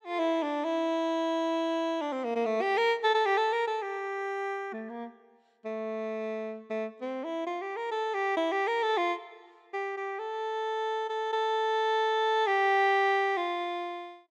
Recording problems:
none

